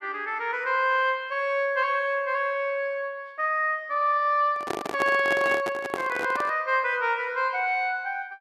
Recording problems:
handling noise; from 4.5 to 6.5 s; peak 0 dB vs average level

